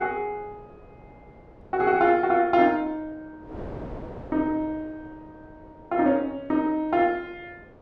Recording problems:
wind on the microphone; below 590 Hz, SNR 21 dB

